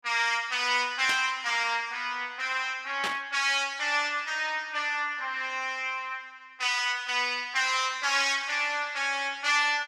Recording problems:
burst of static; at 1 s and at 3 s; peak -1 dB vs average level

